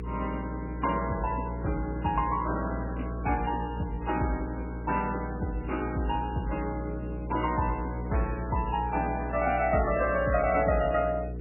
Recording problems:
lossy codec; MP3, log-spectral distance 4 dB, nothing above 2.7 kHz
electrical hum; 60 Hz, harmonics up to 480 Hz, SNR 7 dB

